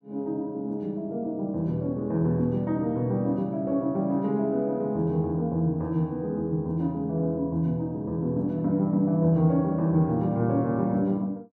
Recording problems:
none

